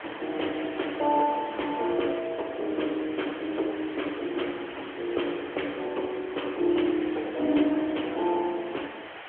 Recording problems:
telephone audio; 260 Hz to 3.3 kHz, AMR-NB
background hiss; SNR 12 dB

